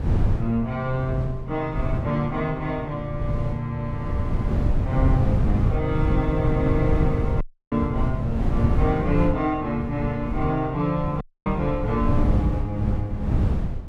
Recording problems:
wind noise; below 140 Hz, SNR 0 dB
dropout; at 7.5 s and at 11 s

